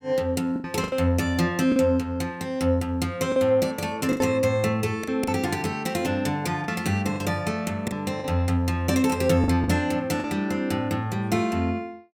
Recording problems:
packet loss; 6% of the sound replaced, filled with the last packet

